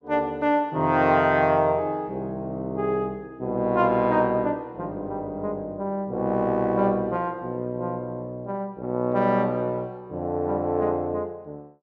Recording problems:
none

